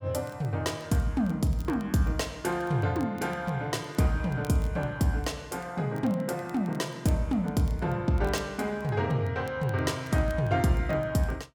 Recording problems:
crackle; vinyl, SNR 28 dB

